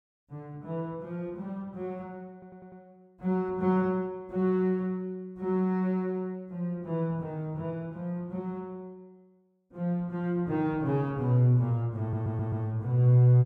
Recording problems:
stutter; at 2.5 s and at 12 s

